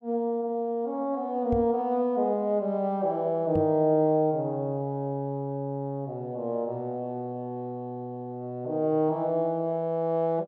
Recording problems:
microphone thump; at 1.5 s and at 3.5 s; peak 0 dB vs average level

